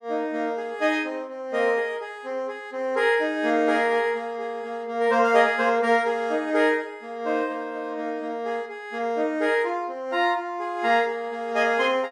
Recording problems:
none

